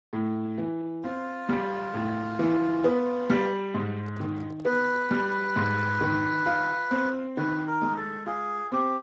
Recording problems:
lossy compression; Speex, log-spectral distance 3 dB
microphone handling noise; from 4 to 6 s; peak -12 dB vs average level

